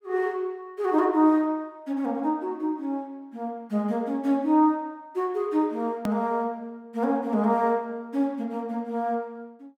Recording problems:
click at an edit; at 6 s

